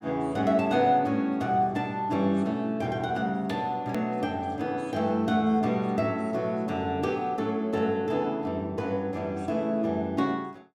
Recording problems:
edit click; at 4 s

